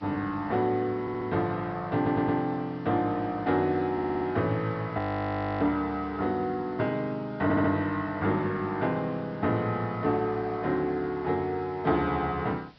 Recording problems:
low-pass filter; nothing above 5.5 kHz
hiss; slope -3 dB per octave, SNR 29 dB
stutter; 4 times, first at 1 s
audio freezing; at 5 s for 0.5 s

